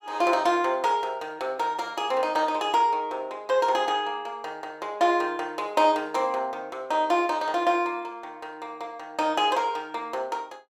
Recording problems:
none

